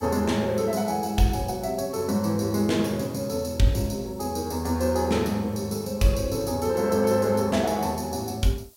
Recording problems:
hiss; SNR 27 dB

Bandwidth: 16 kHz